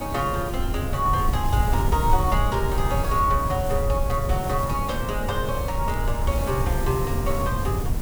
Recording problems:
electrical hum; 50 Hz, harmonics up to 300 Hz, SNR 17 dB
background hiss; SNR 7 dB
rumble; below 90 Hz, SNR 3 dB
crackle; from 1 to 3 s, from 3.5 to 4.5 s and from 5.5 to 7 s; loose cable, SNR 25 dB

